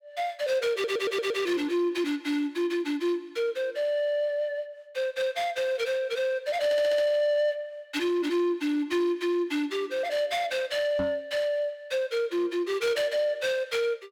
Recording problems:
distortion; soft clipping, signal-to-distortion ratio 12 dB
stutter; at 0.5 s and at 6.5 s
microphone bump; at 11 s; peak 0 dB vs average level

